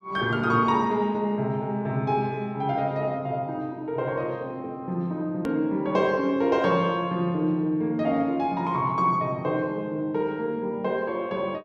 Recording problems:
click at an edit; at 5.5 s

